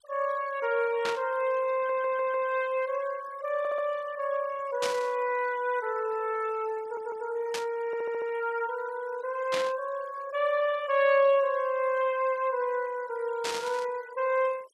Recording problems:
denoising artefacts; signal-to-artefact ratio 21 dB
burst of static; 5 times, first at 1 s; peak 0 dB vs average level
stutter; 4 times, first at 2 s

